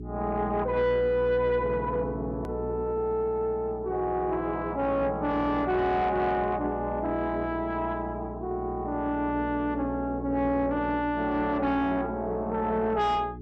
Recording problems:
distorted audio; soft clipping, signal-to-distortion ratio 11 dB
hum; 60 Hz, harmonics up to 420 Hz, SNR 12 dB
click at an edit; at 2.5 s

